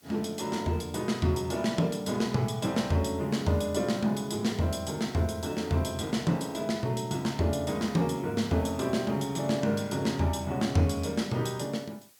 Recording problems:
hiss; slope +1 dB per octave, SNR 28 dB

